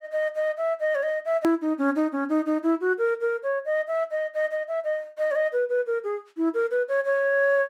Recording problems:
click at an edit; at 1.5 s

